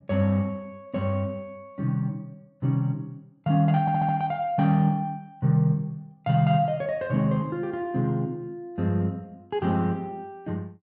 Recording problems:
stutter; at 4 s

